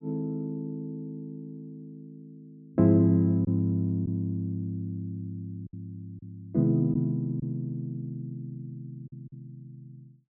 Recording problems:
lost packets; 2% of the sound replaced, filled with silence

